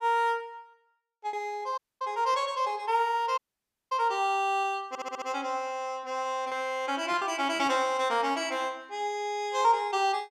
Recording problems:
packet loss; 4% of the sound replaced, filled with repeated pitch periods
dropout; at 2 s and at 3.5 s for 0.5 s
audio stuttering; at 5 s

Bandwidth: 15.5 kHz